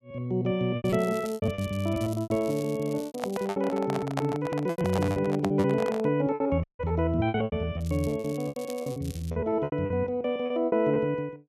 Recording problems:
packet loss; 15% of the sound replaced, filled with repeated pitch periods
crackle; from 1 to 3.5 s, at 4.5 s and from 8 to 9.5 s; loose cable, SNR 20 dB
handling noise; from 3 to 6 s; peak +2 dB vs average level
dropout; at 6.5 s

